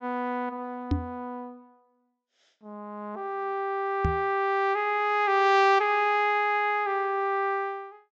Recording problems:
treble cut off; nothing above 8 kHz
microphone thump; at 1 s and at 4 s; peak +3 dB vs average level

